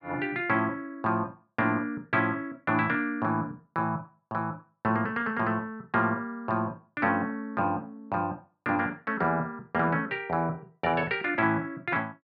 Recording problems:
none

